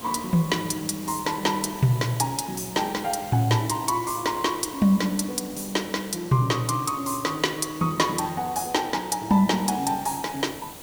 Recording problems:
hiss; SNR 15 dB

